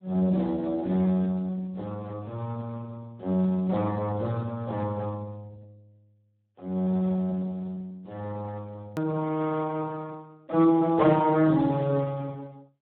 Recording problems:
phone line; 190 Hz to 2.1 kHz, Speex
hard cut with a click; at 9 s

